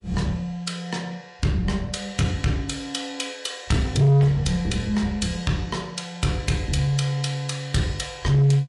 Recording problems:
lossy codec; MP3, log-spectral distance 2 dB, nothing above 11 kHz
distorted audio; soft clipping, signal-to-distortion ratio 7 dB

